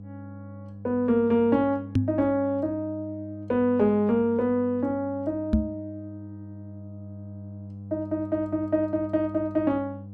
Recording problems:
hum; 50 Hz, harmonics up to 500 Hz, SNR 15 dB
knock on the microphone; at 2 s and at 5.5 s; peak +7 dB vs average level

